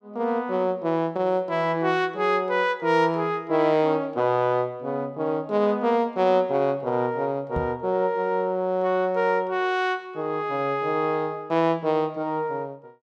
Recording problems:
microphone thump; at 7.5 s; peak -2 dB vs average level

